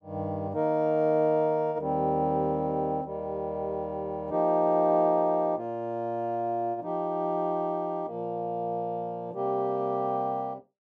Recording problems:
none

